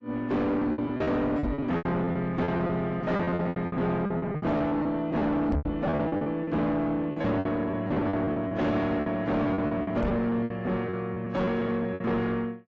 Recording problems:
lossy compression; AAC, log-spectral distance 2 dB, nothing above 7.6 kHz
distorted audio; soft clipping, signal-to-distortion ratio 5 dB
lost packets; 17% of the sound replaced, filled with repeated pitch periods
knock on the microphone; at 1.5 s, at 5.5 s and at 10 s; peak +3 dB vs average level

